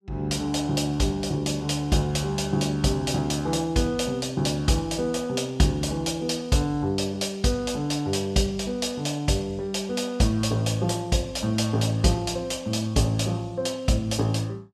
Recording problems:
none

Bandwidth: 13.5 kHz